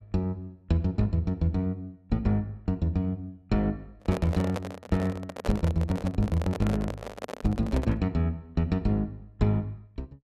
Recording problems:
microphone handling noise; from 4 to 8 s; peak -1 dB vs average level

